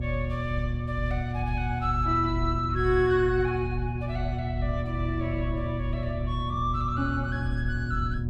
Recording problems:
hum; 60 Hz, harmonics up to 600 Hz, SNR 3 dB
rumble; below 78 Hz, strongest tone 46 Hz, SNR 4 dB

